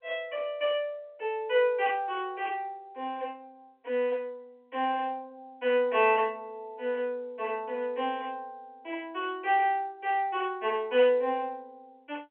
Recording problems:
telephone audio; 280 Hz to 3.3 kHz, G.711

